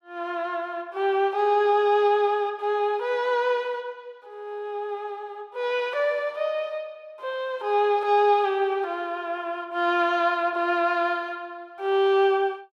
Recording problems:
none

